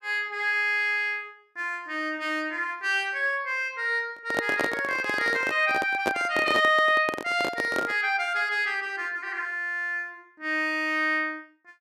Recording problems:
handling noise; from 4 to 8 s; peak +2 dB vs average level

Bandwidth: 14.5 kHz